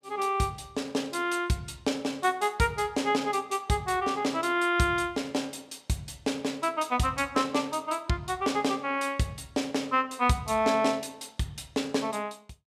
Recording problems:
none

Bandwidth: 15 kHz